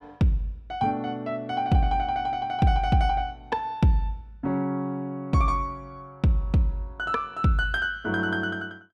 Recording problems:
none

